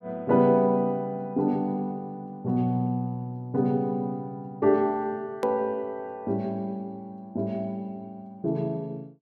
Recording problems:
click at an edit; at 5.5 s

